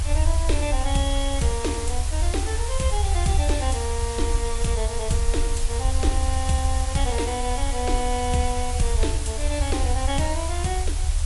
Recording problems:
codec artefacts; MP3, log-spectral distance 8 dB, nothing above 11 kHz
hiss; slope 0 dB per octave, SNR 5 dB
low-frequency rumble; below 74 Hz, SNR -1 dB

